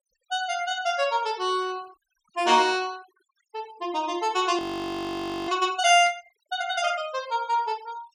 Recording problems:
denoising artefacts; signal-to-artefact ratio 25 dB
frozen audio; at 4.5 s for 1 s
burst of static; at 6 s; peak -15 dB vs average level

